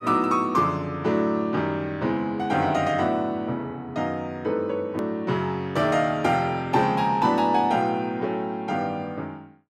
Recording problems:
edit click; at 5 s

